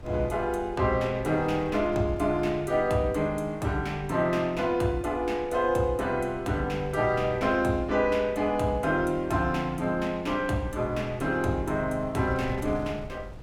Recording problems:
wind on the microphone; below 180 Hz, SNR 17 dB

